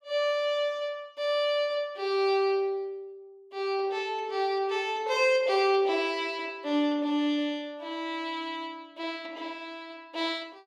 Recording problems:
none

